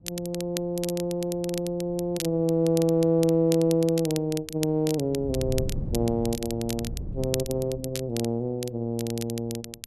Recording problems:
wind noise; below 150 Hz, SNR 10 dB
crackle; vinyl, SNR 12 dB

